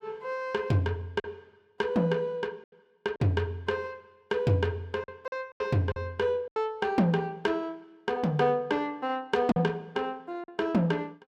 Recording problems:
lost packets; 4% of the sound replaced, filled with silence

